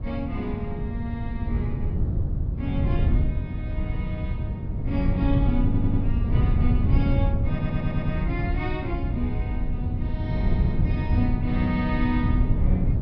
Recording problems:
treble cut off; nothing above 5.5 kHz
wind noise; below 130 Hz, SNR -5 dB
audio stuttering; at 5.5 s and at 7.5 s

